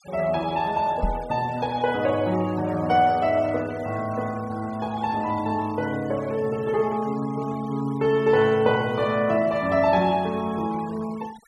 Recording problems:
denoising artefacts; signal-to-artefact ratio 21 dB
knock on the microphone; at 1 s; peak +1 dB vs average level

